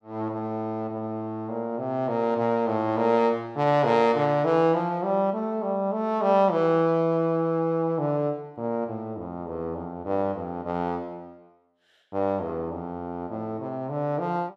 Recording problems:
none

